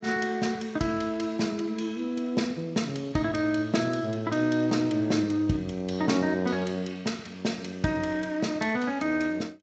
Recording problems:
codec artefacts; Speex, log-spectral distance 4 dB, nothing above 7.3 kHz

